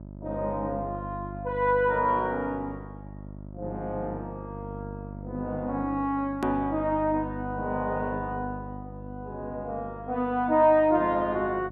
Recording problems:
electrical hum; 50 Hz, harmonics up to 950 Hz, SNR 13 dB
click at an edit; at 6.5 s

